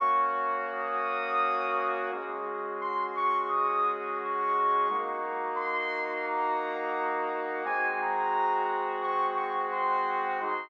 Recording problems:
none

